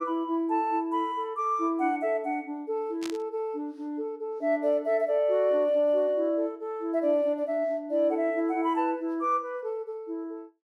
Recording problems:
static burst; at 3 s; peak -7 dB vs average level

